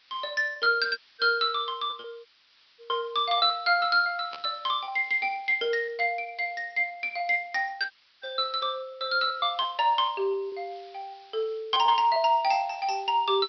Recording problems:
low-pass filter; nothing above 5.5 kHz
background hiss; SNR 30 dB
lost packets; 7% of the sound replaced, filled with repeated pitch periods
dropout; at 1 s, at 2.5 s for 0.5 s and at 8 s
burst of static; at 4.5 s; peak -9 dB vs average level

